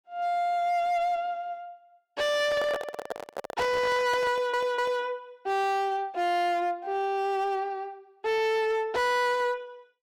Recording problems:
distortion; hard clipping, uneven, signal-to-distortion ratio 7 dB
handling noise; from 2.5 to 5 s; peak -1 dB vs average level
audio stuttering; at 4.5 s

